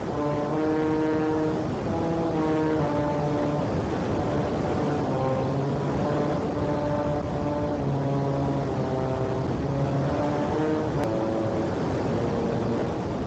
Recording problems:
lossy compression; Speex, log-spectral distance 4 dB, nothing above 13.1 kHz
distortion; hard clipping, signal-to-distortion ratio 11 dB
background hiss; slope -10 dB per octave, SNR 1 dB
rumble; below 240 Hz, SNR 12 dB
click at an edit; at 11 s

